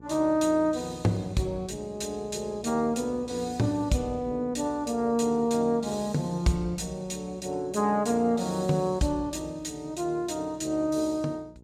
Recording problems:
hum; 60 Hz, harmonics up to 900 Hz, SNR 23 dB

